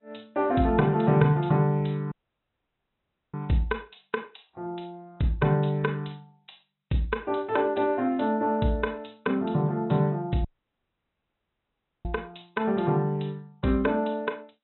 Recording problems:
treble cut off; nothing above 3.9 kHz
lossy codec; Vorbis, then G.722, log-spectral distance 3 dB
audio cutting out; at 2 s for 1 s and at 10 s for 1.5 s

